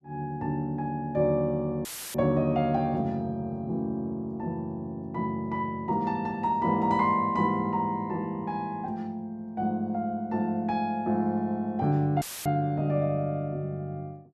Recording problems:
audio cutting out; at 2 s and at 12 s; filled with static

